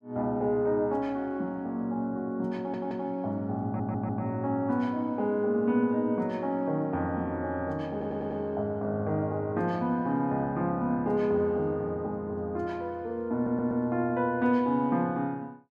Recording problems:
stutter; 4 times, first at 2.5 s

